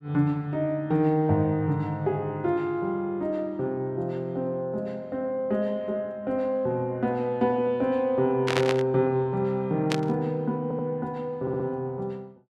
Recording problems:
burst of static; at 8.5 s and at 10 s; peak +4 dB vs average level
stutter; at 11 s

